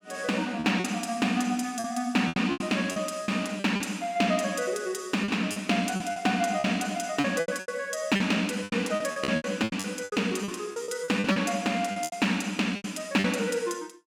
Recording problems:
packet loss; 13% of the sound replaced, filled with repeated pitch periods

